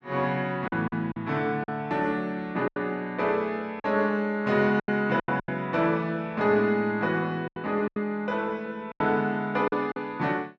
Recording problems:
lost packets; 8% of the sound replaced, filled with silence

